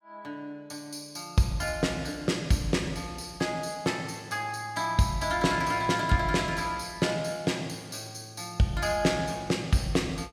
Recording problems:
none

